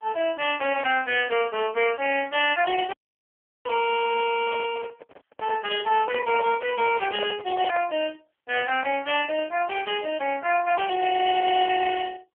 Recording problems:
phone line; 240 Hz to 3.1 kHz, AMR-NB
audio cutting out; at 3 s for 0.5 s
microphone handling noise; from 4.5 to 8 s; peak -4 dB vs average level

